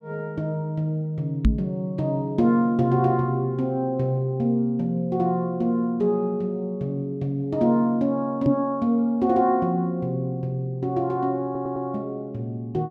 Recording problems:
knock on the microphone; at 1.5 s and at 8.5 s; peak +8 dB vs average level
stutter; at 11 s

